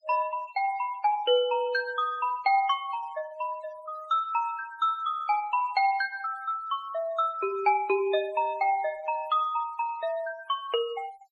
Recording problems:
noise reduction artefacts; signal-to-artefact ratio 21 dB

